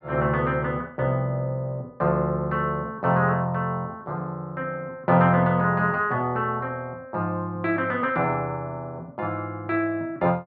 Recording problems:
none

